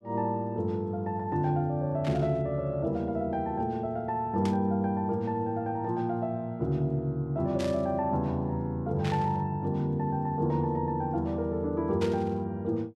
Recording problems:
burst of static; 5 times, first at 2 s; peak -6 dB vs average level

